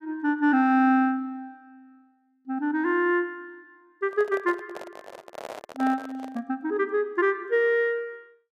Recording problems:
handling noise; from 4 to 6.5 s; peak -9 dB vs average level

